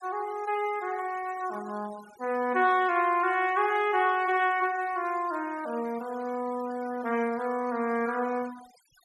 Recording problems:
denoising artefacts; signal-to-artefact ratio 21 dB

